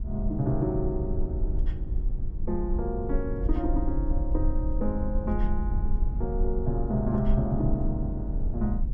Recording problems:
rumble; below 60 Hz, SNR 0 dB

